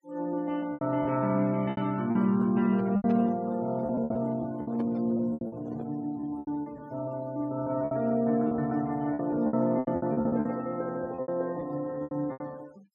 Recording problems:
noise reduction artefacts; signal-to-artefact ratio 24 dB
lost packets; 13% of the sound replaced, filled with repeated pitch periods
handling noise; from 2 to 6 s; peak -4 dB vs average level

